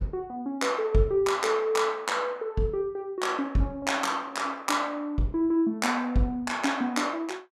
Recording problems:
none

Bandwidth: 14.5 kHz